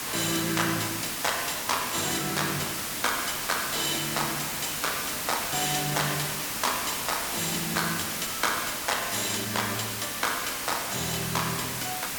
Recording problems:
hiss; slope -1 dB per octave, SNR 1 dB

